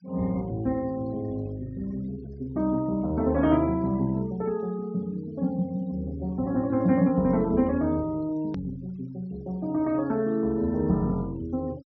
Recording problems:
treble cut off; nothing above 6 kHz
noise reduction artefacts; signal-to-artefact ratio 27 dB
click at an edit; at 8.5 s

